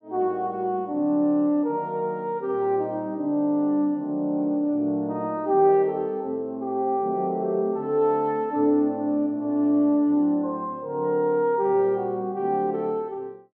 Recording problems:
none

